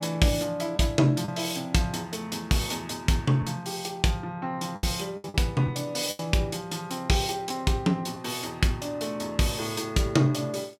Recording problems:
packet loss; 3% of the sound replaced, filled with the last packet

